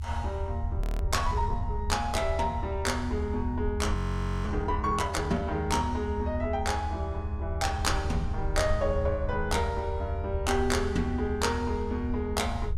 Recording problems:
low-frequency rumble; below 82 Hz, SNR 3 dB
frozen audio; at 1 s and at 4 s for 0.5 s

